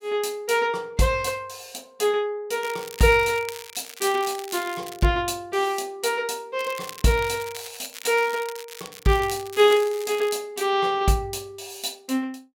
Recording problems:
crackle; from 2.5 to 5 s and from 6.5 to 10 s; loose cable, SNR 15 dB

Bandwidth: 16.5 kHz